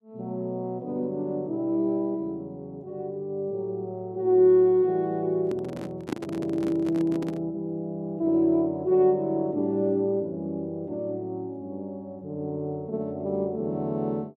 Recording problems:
microphone handling noise; from 5.5 to 7.5 s; peak +1 dB vs average level

